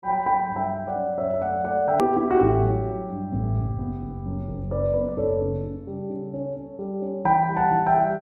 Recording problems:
edit click; at 2 s

